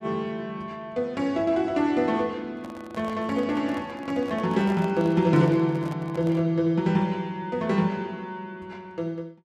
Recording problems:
microphone handling noise; from 2.5 to 6.5 s; peak -9 dB vs average level

